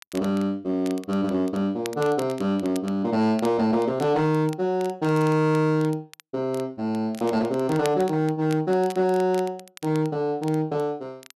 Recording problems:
distortion; hard clipping, signal-to-distortion ratio 12 dB
crackling; vinyl, SNR 21 dB

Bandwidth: 12.5 kHz